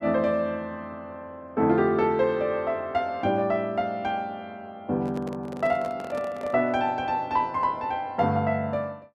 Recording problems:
microphone handling noise; from 5 to 6.5 s; peak -8 dB vs average level

